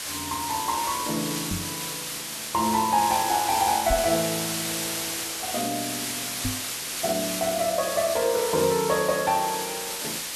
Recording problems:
background hiss; slope +1 dB per octave, SNR 3 dB
microphone thump; at 1.5 s, at 4 s and at 6.5 s; peak 0 dB vs average level

